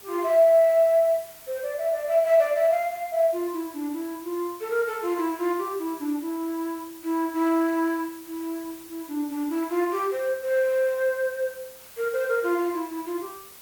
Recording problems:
background hiss; slope -1 dB per octave, SNR 19 dB

